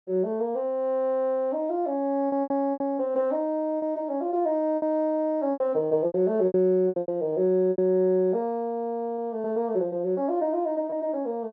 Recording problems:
packet loss; 8% of the sound replaced, filled with repeated pitch periods

